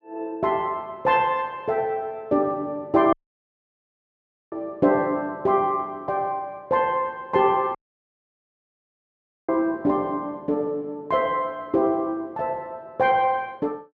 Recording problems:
audio cutting out; at 3 s for 1.5 s and at 8 s for 1.5 s

